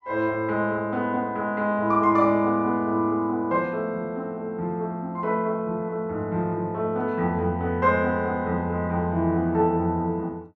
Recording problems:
none

